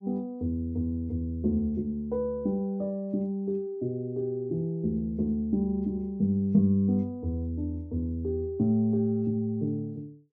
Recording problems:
none

